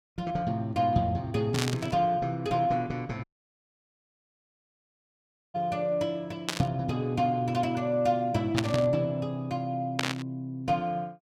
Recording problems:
burst of static; 4 times, first at 1.5 s; peak +4 dB vs average level
audio cutting out; at 3 s for 2.5 s

